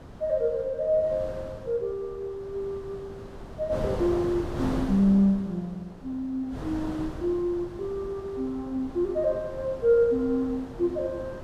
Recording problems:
wind noise; below 560 Hz, SNR 12 dB

